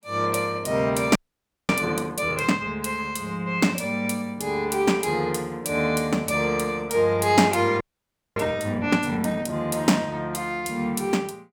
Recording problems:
frozen audio; at 1 s for 0.5 s and at 8 s for 0.5 s

